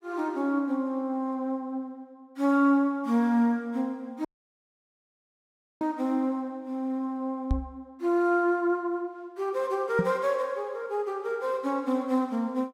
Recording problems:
audio cutting out; at 4.5 s for 1.5 s
knock on the microphone; at 7.5 s and at 10 s; peak +4 dB vs average level

